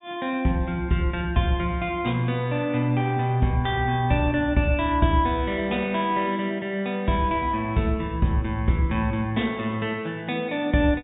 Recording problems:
treble cut off; nothing above 4 kHz

